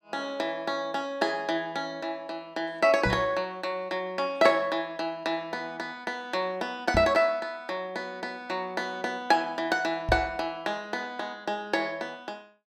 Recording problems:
knock on the microphone; at 3 s, at 7 s and at 10 s; peak +2 dB vs average level

